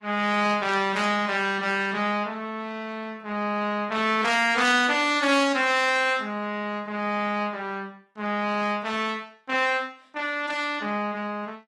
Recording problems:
lossy compression; AAC, then AAC, log-spectral distance 3 dB, nothing above 11.3 kHz

